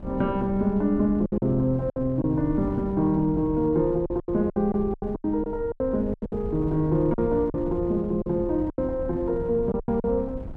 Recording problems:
wind noise; below 170 Hz, SNR 12 dB
packet loss; 11% of the sound replaced, filled with silence

